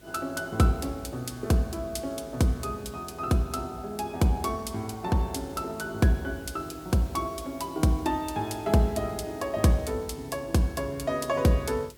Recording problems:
electrical hum; 50 Hz, harmonics up to 550 Hz, SNR 27 dB
hiss; slope +2 dB per octave, SNR 25 dB

